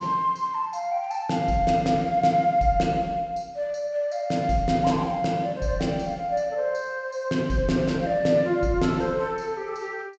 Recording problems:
treble cut off; nothing above 8 kHz

